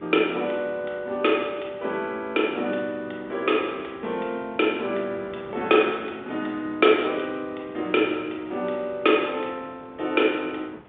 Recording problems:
phone line; 130 Hz to 3.6 kHz, G.711
wind noise; below 920 Hz, SNR 22 dB

